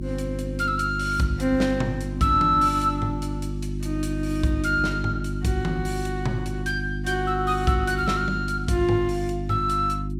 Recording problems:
hum; 50 Hz, harmonics up to 350 Hz, SNR 5 dB

